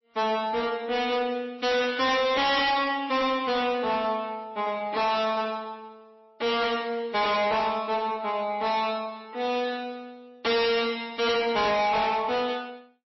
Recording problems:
lossy codec; MP3, then MP3, log-spectral distance 3 dB, nothing above 5.7 kHz
distorted audio; hard clipping, signal-to-distortion ratio 6 dB

